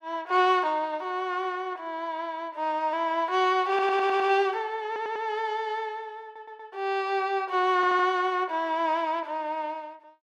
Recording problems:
stutter; 4 times, first at 3.5 s

